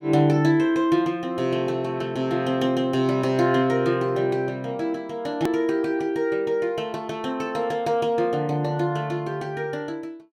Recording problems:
click at an edit; at 5.5 s

